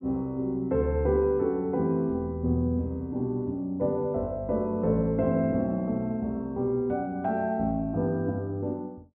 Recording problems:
treble missing; nothing above 4 kHz

